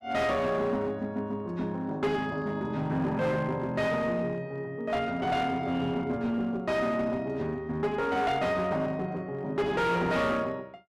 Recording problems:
distortion; hard clipping, uneven, signal-to-distortion ratio 10 dB

